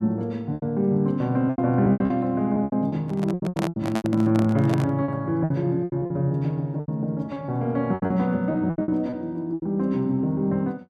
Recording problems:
lost packets; 14% of the sound replaced, filled with repeated pitch periods
microphone handling noise; from 3 to 5 s; peak 0 dB vs average level

